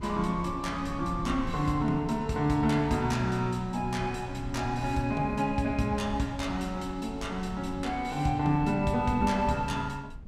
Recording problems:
wind noise; below 150 Hz, SNR 14 dB

